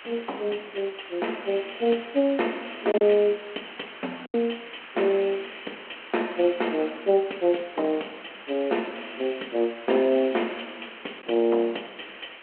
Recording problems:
phone line; 240 Hz to 3.2 kHz, G.726
hiss; SNR 16 dB
packet loss; 1.1% of the sound replaced, filled with silence

